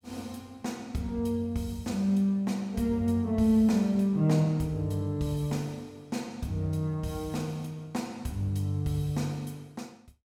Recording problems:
none

